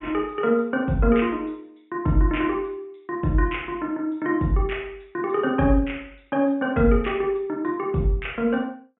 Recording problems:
treble missing; nothing above 3.4 kHz

